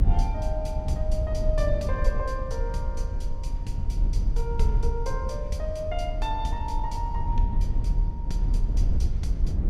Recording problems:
rumble; below 64 Hz, strongest tone 36 Hz, SNR -5 dB

